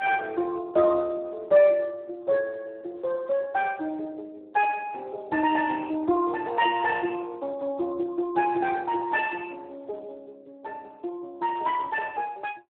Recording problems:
telephone audio; 280 Hz to 2.8 kHz, Speex

